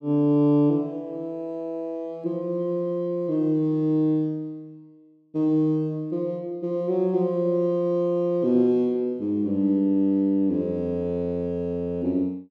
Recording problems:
none

